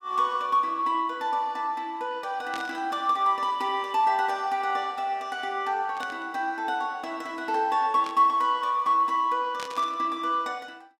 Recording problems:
static burst; 4 times, first at 2.5 s; peak -8 dB vs average level

